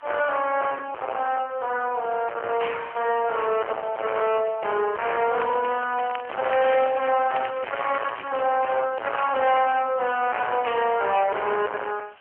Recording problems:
phone line; 320 Hz to 3.4 kHz, AMR-NB
distorted audio; hard clipping, uneven, signal-to-distortion ratio 6 dB
background hiss; SNR 27 dB
crackle; from 5.5 to 9 s; loose cable, SNR 16 dB

